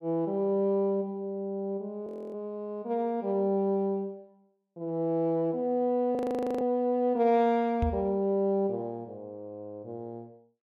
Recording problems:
frozen audio; at 2 s and at 6 s
microphone thump; at 8 s; peak +2 dB vs average level

